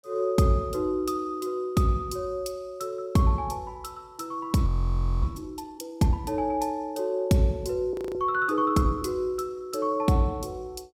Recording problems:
frozen audio; at 4.5 s for 0.5 s and at 8 s

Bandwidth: 17 kHz